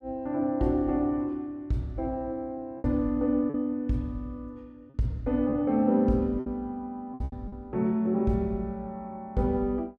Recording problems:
packet loss; 4% of the sound replaced, filled with repeated pitch periods

